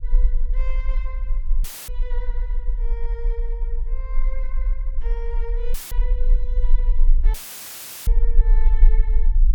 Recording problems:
low-frequency rumble; below 36 Hz, strongest tone 18 Hz, SNR -17 dB
dropout; at 1.5 s, at 5.5 s and at 7.5 s for 0.5 s; filled with static

